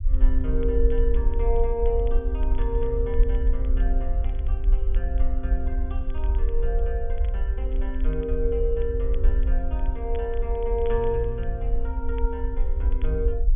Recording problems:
low-pass filter; nothing above 3.4 kHz
rumble; below 52 Hz, SNR -4 dB
crackle; vinyl, SNR 27 dB

